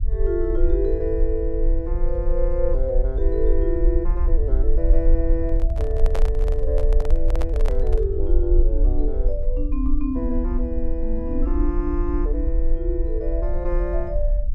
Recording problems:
rumble; below 46 Hz, strongest tone 20 Hz, SNR -3 dB
microphone handling noise; from 5.5 to 8 s; peak +1 dB vs average level

